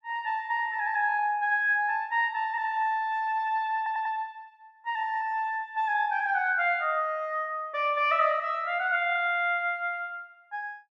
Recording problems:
audio stuttering; at 4 s

